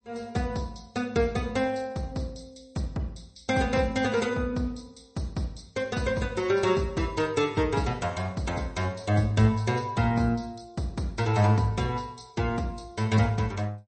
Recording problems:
codec artefacts; MP3, log-spectral distance 4 dB, nothing above 8.2 kHz

